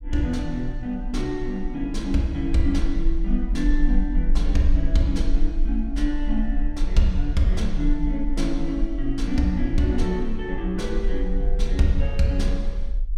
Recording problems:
rumble; below 42 Hz, strongest tone 20 Hz, SNR 2 dB

